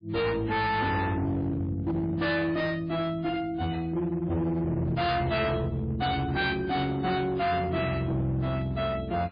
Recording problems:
lossy codec; MP3, log-spectral distance 2 dB, nothing above 4.6 kHz
distortion; hard clipping, signal-to-distortion ratio 8 dB

